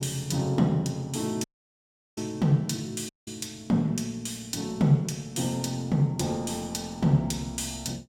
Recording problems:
dropout; at 1.5 s for 0.5 s and at 3 s

